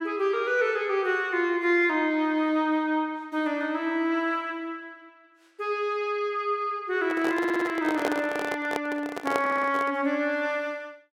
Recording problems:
handling noise; from 7 to 10 s; peak +2 dB vs average level
stutter; at 7.5 s and at 9.5 s

